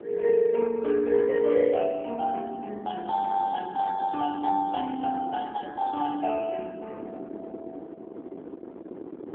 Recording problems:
phone line; 260 Hz to 2.6 kHz, AMR-NB
wind on the microphone; below 450 Hz, SNR 16 dB

